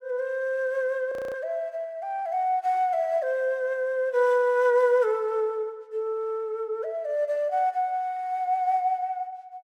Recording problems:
audio freezing; at 1 s

